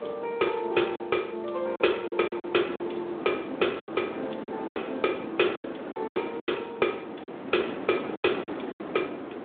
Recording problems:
phone line; 240 Hz to 3.6 kHz, Speex
wind noise; below 700 Hz, SNR 9 dB
lost packets; 10% of the sound replaced, filled with silence

